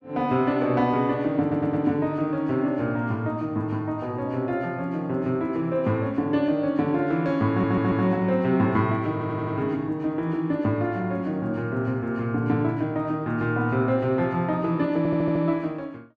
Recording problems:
stutter; 4 times, first at 1.5 s

